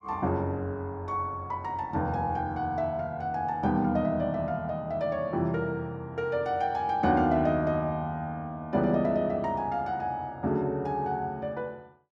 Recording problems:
none

